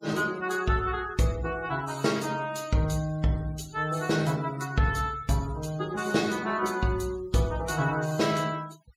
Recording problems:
noise reduction artefacts; signal-to-artefact ratio 19 dB

